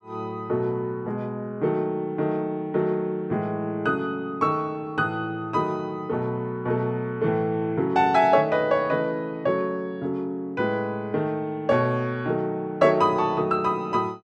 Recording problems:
none

